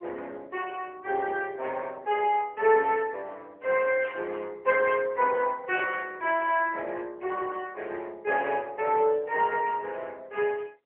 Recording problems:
phone line; 340 Hz to 3.1 kHz, AMR-NB
burst of static; at 4 s and at 6 s; peak -11 dB vs average level

